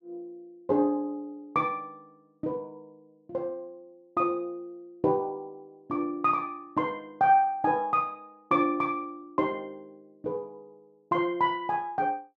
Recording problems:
none

